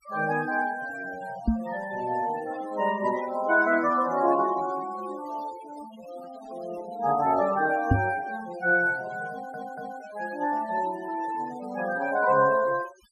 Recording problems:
denoising artefacts; signal-to-artefact ratio 18 dB
microphone bump; at 1.5 s and at 8 s; peak +8 dB vs average level
audio stuttering; at 9.5 s

